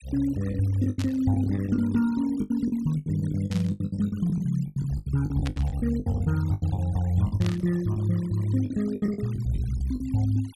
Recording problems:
denoising artefacts; signal-to-artefact ratio 23 dB
packet loss; 16% of the sound replaced, filled with the last packet
burst of static; 4 times, first at 1 s; peak -6 dB vs average level

